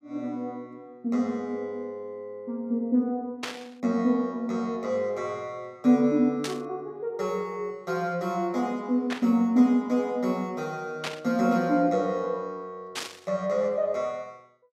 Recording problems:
static burst; 5 times, first at 3.5 s; peak 0 dB vs average level

